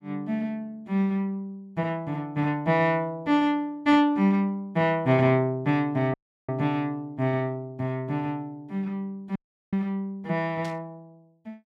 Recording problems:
audio cutting out; at 6 s and at 9.5 s
static burst; at 11 s; peak -12 dB vs average level

